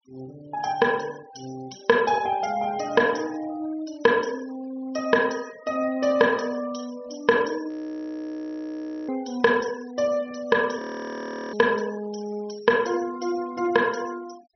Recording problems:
treble missing; nothing above 5.9 kHz
denoising artefacts; signal-to-artefact ratio 21 dB
audio freezing; at 7.5 s for 1.5 s and at 11 s for 0.5 s

